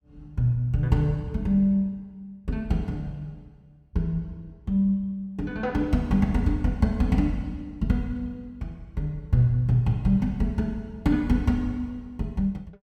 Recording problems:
none

